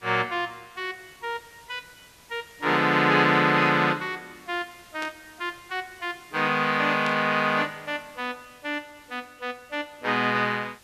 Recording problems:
background hiss; slope -1 dB per octave, SNR 27 dB
burst of static; at 5 s and at 7 s; peak -6 dB vs average level

